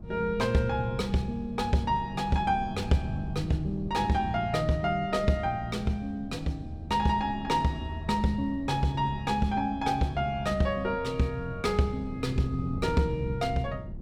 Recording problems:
wind on the microphone; below 190 Hz, SNR 12 dB

